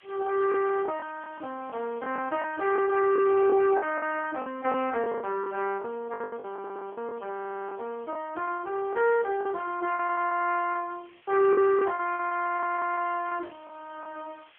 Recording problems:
phone line; 280 Hz to 3.1 kHz, AMR-NB
background hiss; SNR 29 dB
packet loss; 9% of the sound replaced, filled with the last packet
stutter; at 6.5 s, at 7.5 s and at 12 s

